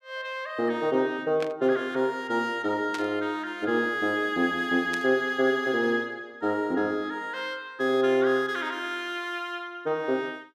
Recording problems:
burst of static; at 1.5 s, at 3 s and at 5 s; peak -5 dB vs average level

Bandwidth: 15 kHz